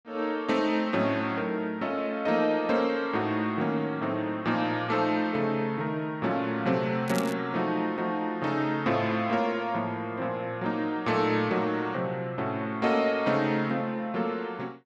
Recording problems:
crackling; at 7 s; loose cable, SNR 15 dB

